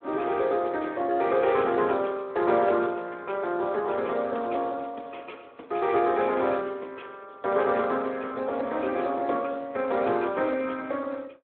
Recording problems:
telephone audio; 240 Hz to 3.8 kHz, Speex

